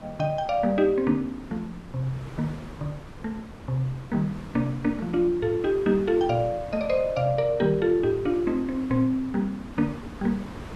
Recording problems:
wind on the microphone; below 740 Hz, SNR 16 dB

